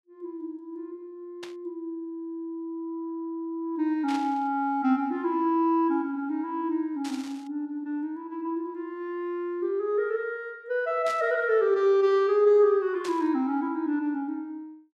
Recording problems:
burst of static; 5 times, first at 1.5 s; peak -8 dB vs average level

